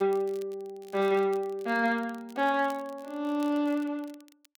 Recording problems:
crackle; vinyl, SNR 26 dB

